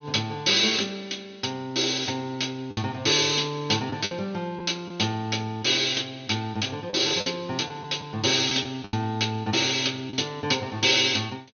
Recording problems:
low-pass filter; nothing above 6.4 kHz
lost packets; 4% of the sound replaced, filled with the last packet

